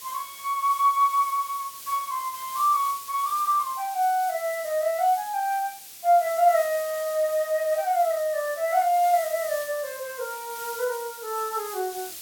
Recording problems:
hiss; SNR 14 dB

